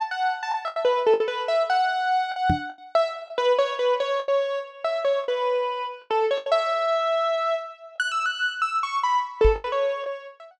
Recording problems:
lost packets; 6% of the sound replaced, filled with the last packet
knock on the microphone; at 2.5 s and at 9.5 s; peak +4 dB vs average level

